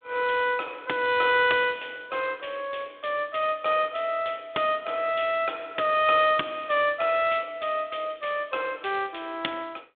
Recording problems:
telephone audio; 260 Hz to 3.6 kHz, G.726

